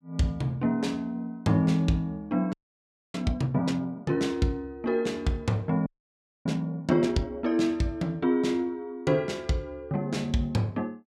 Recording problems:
frozen audio; at 2.5 s for 0.5 s and at 6 s for 0.5 s

